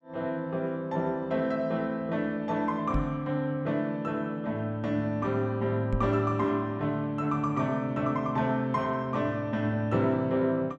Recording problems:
microphone thump; at 3 s and at 6 s; peak +1 dB vs average level

